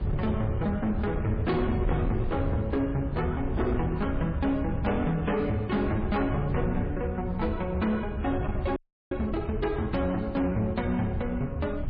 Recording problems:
lossy codec; MP3, log-spectral distance 2 dB, nothing above 4.4 kHz
distortion; hard clipping, signal-to-distortion ratio 11 dB
rumble; below 140 Hz, SNR 5 dB
frozen audio; at 9 s

